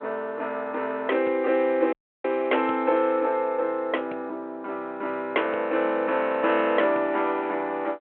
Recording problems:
telephone audio; 300 Hz to 3.2 kHz, G.726
audio cutting out; at 2 s

